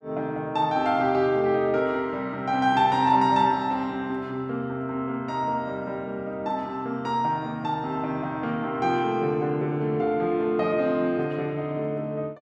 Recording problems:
none

